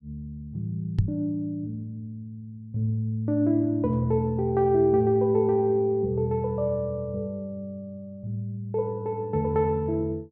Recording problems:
microphone thump; at 1 s; peak +7 dB vs average level

